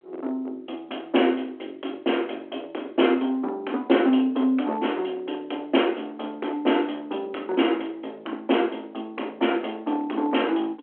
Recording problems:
phone line; 240 Hz to 3.3 kHz, G.726
distortion; hard clipping, signal-to-distortion ratio 18 dB

